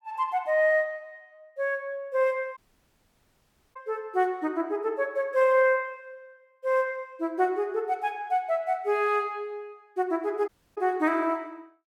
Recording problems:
dropout; at 2.5 s for 1 s and at 10 s

